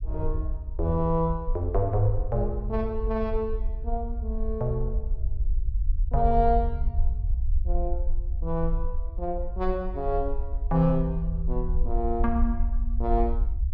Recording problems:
low-frequency rumble; below 56 Hz, SNR 2 dB

